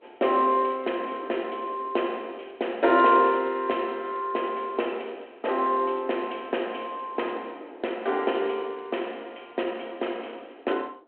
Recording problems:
telephone audio; 280 Hz to 3.3 kHz, G.726
wind on the microphone; below 650 Hz, SNR 22 dB

